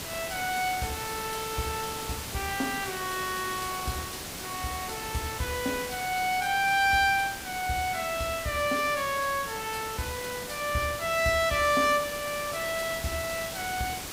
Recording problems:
hiss; slope -2 dB per octave, SNR 7 dB

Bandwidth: 15.5 kHz